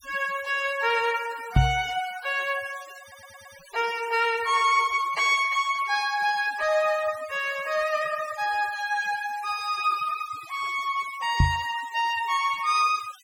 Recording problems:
denoising artefacts; signal-to-artefact ratio 18 dB
microphone bump; at 1.5 s and at 11 s; peak +8 dB vs average level
audio stuttering; at 3 s

